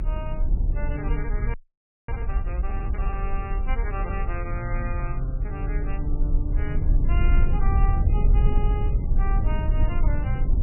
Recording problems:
lossy compression; MP3, log-spectral distance 2 dB, nothing above 2.5 kHz
low-frequency rumble; below 60 Hz, SNR -9 dB
audio freezing; at 1.5 s for 0.5 s

